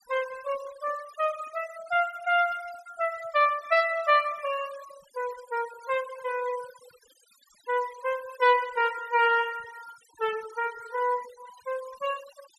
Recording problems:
denoising artefacts; signal-to-artefact ratio 19 dB

